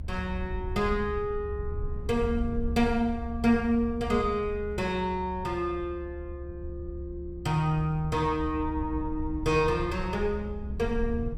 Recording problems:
low-frequency rumble; below 74 Hz, SNR 9 dB

